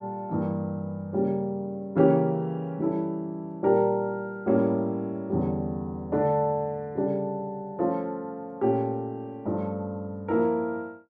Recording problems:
none

